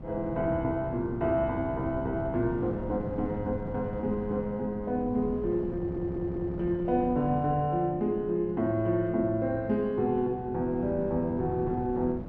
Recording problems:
wind on the microphone; below 250 Hz, SNR 11 dB
stutter; at 6 s

